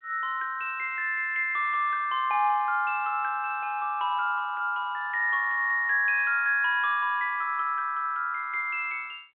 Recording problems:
telephone audio; 150 Hz to 3.4 kHz, G.726

